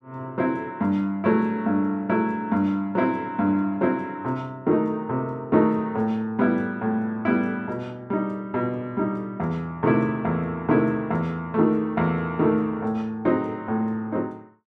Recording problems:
none

